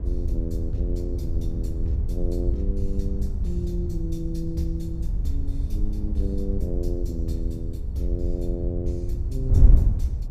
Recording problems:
wind on the microphone; below 74 Hz, SNR -6 dB

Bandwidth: 15.5 kHz